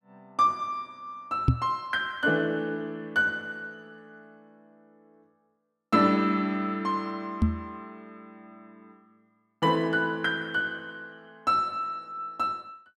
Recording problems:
knock on the microphone; at 1.5 s and at 7.5 s; peak +9 dB vs average level

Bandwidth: 13 kHz